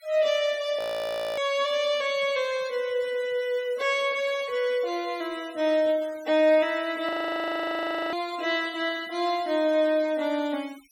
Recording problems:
noise reduction artefacts; signal-to-artefact ratio 21 dB
frozen audio; at 1 s for 0.5 s and at 7 s for 1 s

